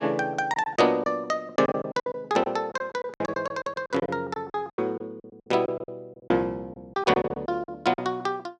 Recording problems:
packet loss; 15% of the sound replaced, filled with silence

